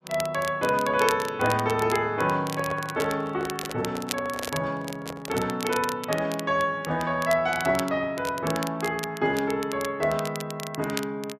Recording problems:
crackling; vinyl, SNR 12 dB
microphone handling noise; from 2.5 to 5.5 s; peak -4 dB vs average level

